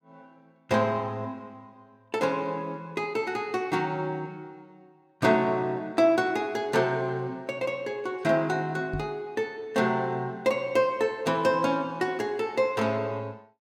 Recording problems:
knock on the microphone; at 9 s; peak -2 dB vs average level

